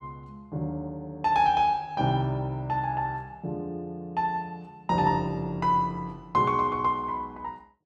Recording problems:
none

